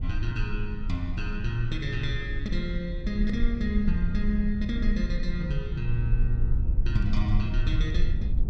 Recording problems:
rumble; below 56 Hz, SNR 0 dB

